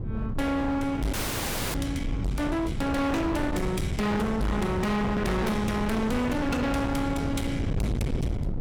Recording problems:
distorted audio; hard clipping, signal-to-distortion ratio 6 dB
wind on the microphone; below 260 Hz, SNR 4 dB
audio freezing; at 1 s for 0.5 s

